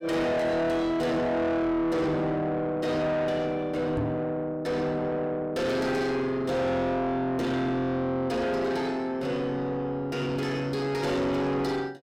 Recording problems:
distortion; soft clipping, signal-to-distortion ratio 7 dB
microphone thump; at 4 s; peak +2 dB vs average level

